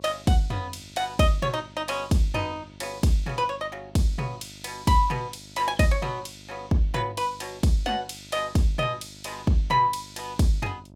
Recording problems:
hum; 50 Hz, harmonics up to 1 kHz, SNR 23 dB

